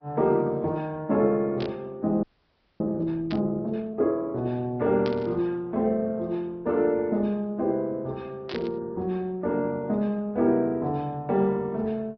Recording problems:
treble missing; nothing above 5.5 kHz
codec artefacts; Vorbis, then Opus, log-spectral distance 2 dB
burst of static; 4 times, first at 1.5 s; peak -6 dB vs average level
audio freezing; at 2 s for 0.5 s

